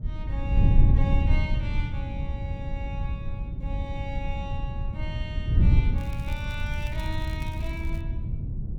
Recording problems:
wind noise; below 100 Hz, SNR -10 dB
crackling; from 6 to 8 s; loose cable, SNR 14 dB

